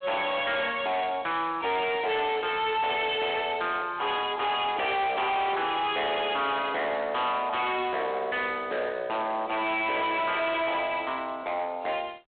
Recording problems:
telephone audio; 240 Hz to 3.5 kHz, G.726
distorted audio; hard clipping, uneven, signal-to-distortion ratio 5 dB

